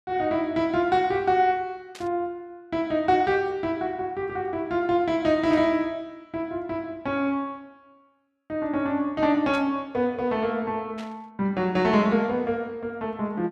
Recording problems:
burst of static; 4 times, first at 2 s; peak -12 dB vs average level

